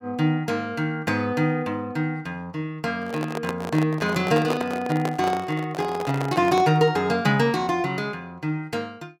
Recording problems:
handling noise; from 3 to 7 s; peak 0 dB vs average level

